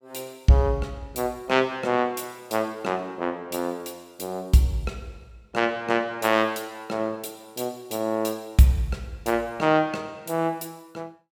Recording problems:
none

